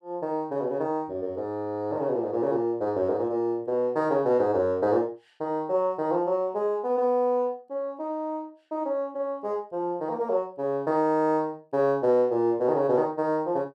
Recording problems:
none

